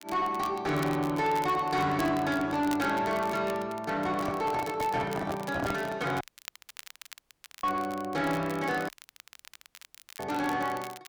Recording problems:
distortion; soft clipping, signal-to-distortion ratio 10 dB
crackle; vinyl, SNR 18 dB
microphone handling noise; from 4 to 6 s; peak +1 dB vs average level
audio cutting out; at 6 s for 1.5 s and at 9 s for 1.5 s

